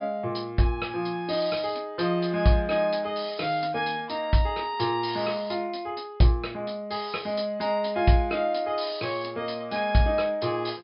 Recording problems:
treble missing; nothing above 5.5 kHz

